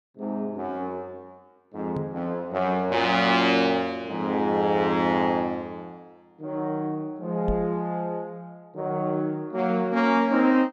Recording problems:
knock on the microphone; at 2 s and at 7.5 s; peak -2 dB vs average level

